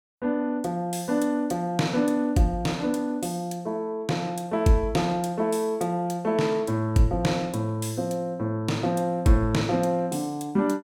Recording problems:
none

